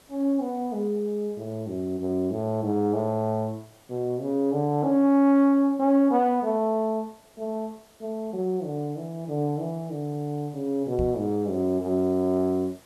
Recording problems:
background hiss; slope -3 dB per octave, SNR 30 dB
microphone thump; at 11 s; peak -3 dB vs average level

